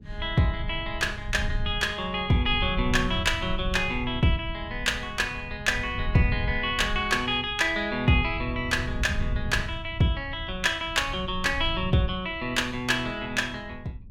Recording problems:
low-frequency rumble; below 100 Hz, SNR 10 dB

